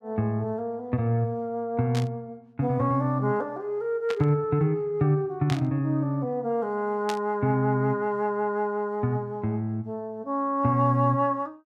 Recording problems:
burst of static; 4 times, first at 2 s; peak -4 dB vs average level

